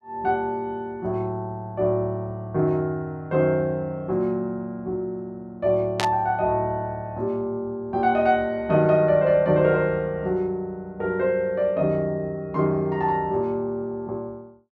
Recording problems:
burst of static; at 6 s; peak +2 dB vs average level

